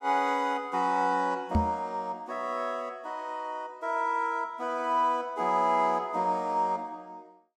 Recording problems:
microphone thump; at 1.5 s; peak +6 dB vs average level

